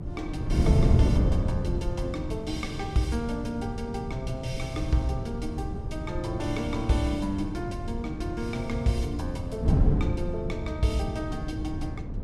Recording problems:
electrical hum; 50 Hz, harmonics up to 600 Hz, SNR 22 dB
wind on the microphone; below 170 Hz, SNR -1 dB

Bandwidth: 14.5 kHz